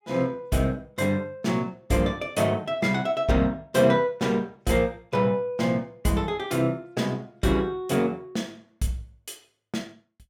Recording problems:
none

